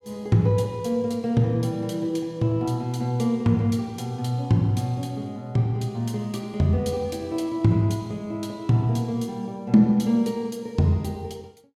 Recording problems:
none

